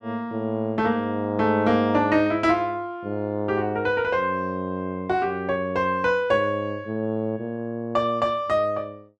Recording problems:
none

